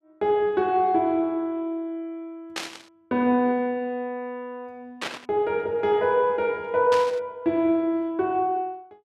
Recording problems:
burst of static; at 2.5 s, at 5 s and at 7 s; peak -1 dB vs average level

